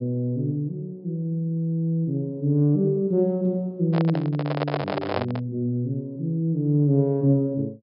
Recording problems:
low-pass filter; nothing above 5.5 kHz
microphone handling noise; from 4 to 5.5 s; peak +2 dB vs average level

